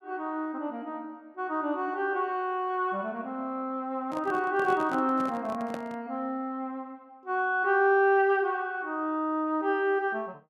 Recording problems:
handling noise; from 4 to 6 s; peak -5 dB vs average level

